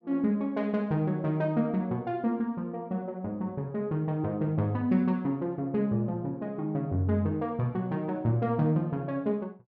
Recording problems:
none

